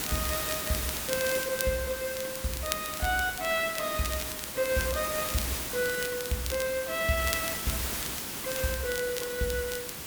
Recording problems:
background hiss; slope -2 dB per octave, SNR 2 dB
crackling; vinyl, SNR 9 dB

